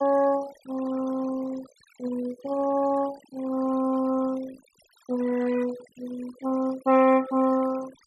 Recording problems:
denoising artefacts; signal-to-artefact ratio 19 dB

